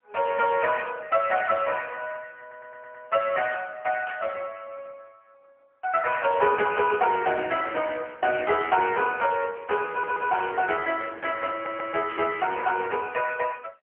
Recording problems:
phone line; 340 Hz to 3.3 kHz, AMR-NB
audio stuttering; at 2.5 s, at 10 s and at 12 s
static burst; 4 times, first at 4 s; peak -10 dB vs average level

